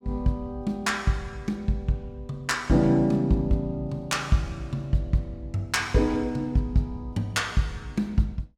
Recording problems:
none

